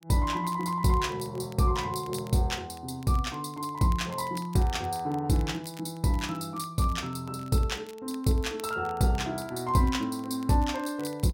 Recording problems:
crackle; vinyl, SNR 24 dB

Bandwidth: 16.5 kHz